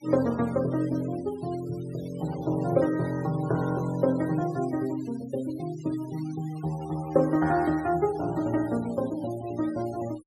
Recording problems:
denoising artefacts; signal-to-artefact ratio 19 dB

